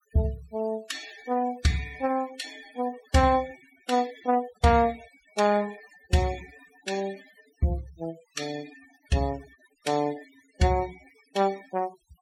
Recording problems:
noise reduction artefacts; signal-to-artefact ratio 17 dB

